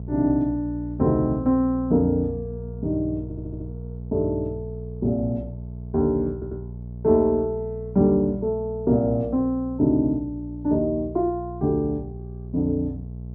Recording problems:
hum; 60 Hz, harmonics up to 480 Hz, SNR 12 dB
audio stuttering; at 3 s and at 6.5 s

